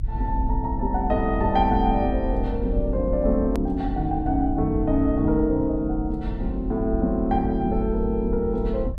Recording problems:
low-frequency rumble; below 68 Hz, strongest tone 46 Hz, SNR 6 dB
hard cut with a click; at 3.5 s

